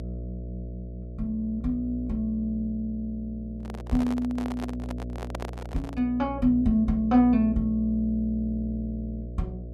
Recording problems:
hum; 60 Hz, harmonics up to 660 Hz, SNR 10 dB
handling noise; from 3.5 to 6 s; peak -5 dB vs average level

